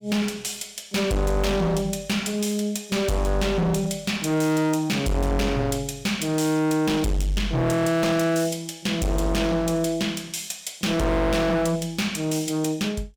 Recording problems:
distorted audio; hard clipping, uneven, signal-to-distortion ratio 6 dB

